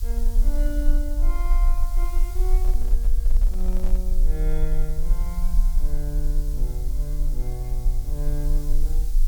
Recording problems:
background hiss; SNR 9 dB
rumble; below 38 Hz, strongest tone 22 Hz, SNR -11 dB
microphone handling noise; from 2.5 to 4 s; peak -2 dB vs average level

